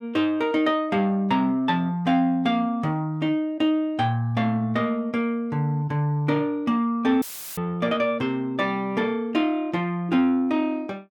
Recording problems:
dropout; at 7 s; filled with static

